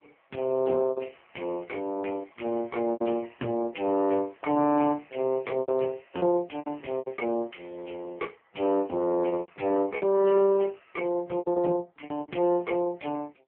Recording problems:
telephone audio; 190 Hz to 3.2 kHz, AMR-NB
lost packets; 8% of the sound replaced, filled with repeated pitch periods

